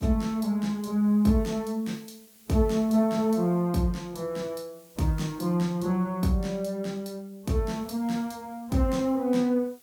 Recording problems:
background hiss; SNR 28 dB

